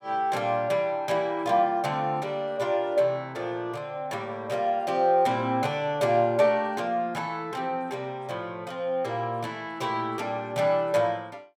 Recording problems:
none

